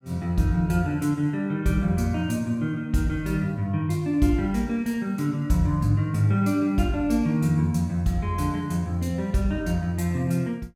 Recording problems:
none

